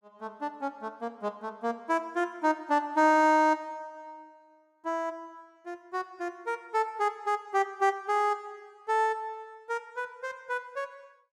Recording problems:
none

